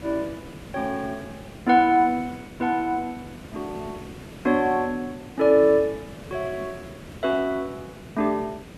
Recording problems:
background hiss; SNR 17 dB

